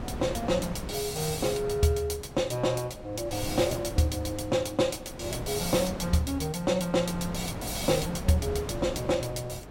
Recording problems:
wind noise; below 540 Hz, SNR 10 dB

